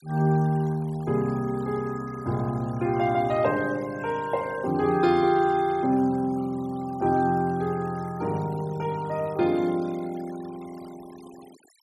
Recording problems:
noise reduction artefacts; signal-to-artefact ratio 24 dB

